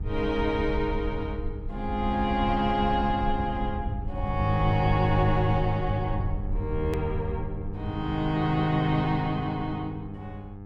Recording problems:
hum; 50 Hz, harmonics up to 1.2 kHz, SNR 13 dB
low-frequency rumble; below 84 Hz, SNR 8 dB
hard cut with a click; at 7 s

